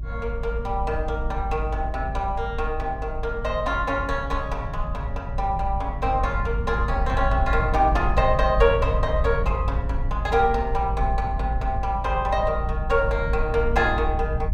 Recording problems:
low-frequency rumble; below 72 Hz, strongest tone 52 Hz, SNR 3 dB

